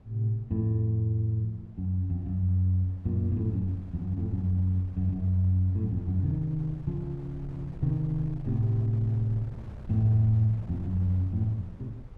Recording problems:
wind on the microphone; below 140 Hz, SNR 17 dB

